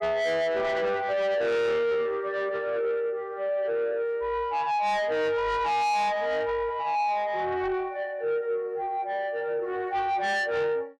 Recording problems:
distortion; soft clipping, signal-to-distortion ratio 7 dB

